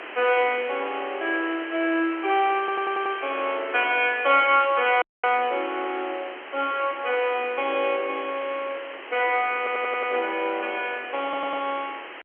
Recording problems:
telephone audio; 280 Hz to 3.2 kHz, G.711
background hiss; SNR 13 dB
stutter; at 2.5 s, at 9.5 s and at 11 s
audio cutting out; at 5 s

